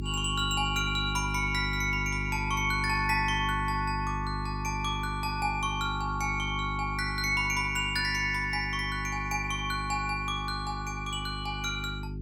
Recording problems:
hum; 50 Hz, harmonics up to 400 Hz, SNR 7 dB

